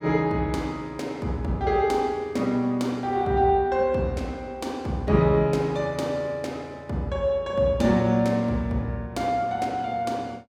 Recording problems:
none

